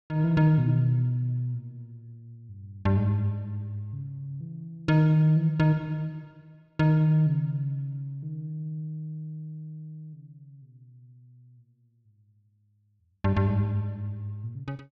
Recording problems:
none

